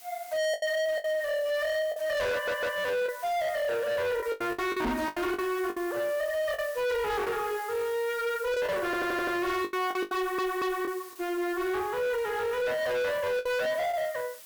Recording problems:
distorted audio; hard clipping, signal-to-distortion ratio 6 dB
hiss; slope +1 dB per octave, SNR 18 dB
lost packets; 8% of the sound replaced, filled with the last packet
stutter; at 2.5 s, at 9 s and at 10 s
knock on the microphone; at 5 s; peak +3 dB vs average level

